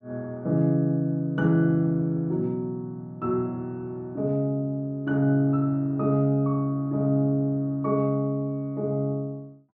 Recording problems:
none

